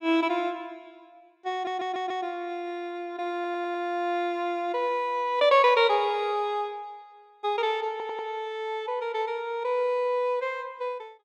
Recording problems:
audio stuttering; at 1.5 s, at 3.5 s and at 8 s

